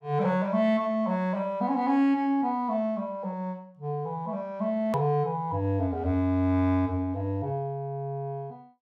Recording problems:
click at an edit; at 5 s

